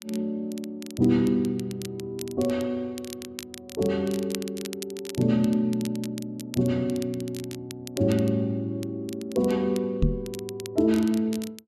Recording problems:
crackling; vinyl, SNR 16 dB
microphone thump; at 10 s; peak +7 dB vs average level

